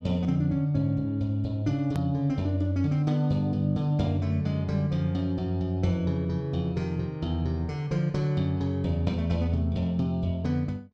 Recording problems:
hard cut with a click; at 2 s

